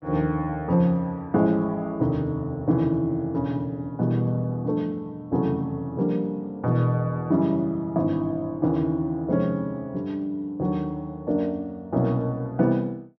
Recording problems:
treble cut off; nothing above 6.3 kHz

